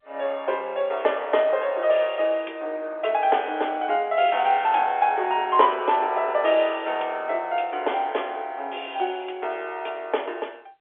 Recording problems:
telephone audio; 320 Hz to 3.5 kHz, G.711

